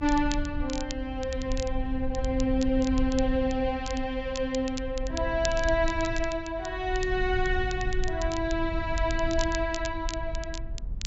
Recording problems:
low-pass filter; nothing above 8 kHz
low-frequency rumble; below 60 Hz, SNR 7 dB
crackle; vinyl, SNR 13 dB

